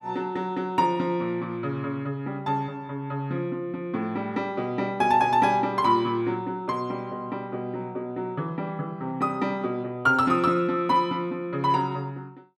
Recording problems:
none

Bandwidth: 14.5 kHz